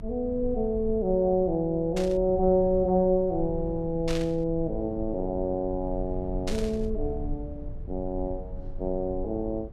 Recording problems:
rumble; below 68 Hz, strongest tone 22 Hz, SNR 12 dB
burst of static; at 2 s, at 4 s and at 6.5 s; peak -5 dB vs average level

